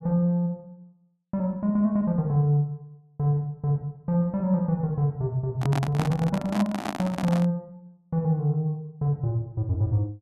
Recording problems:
microphone handling noise; from 5.5 to 7.5 s; peak 0 dB vs average level

